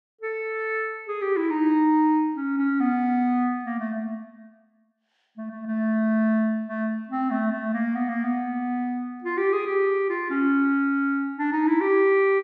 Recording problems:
none

